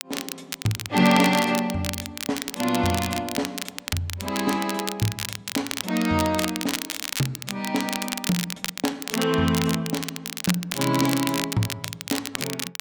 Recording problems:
crackling; vinyl, SNR 5 dB

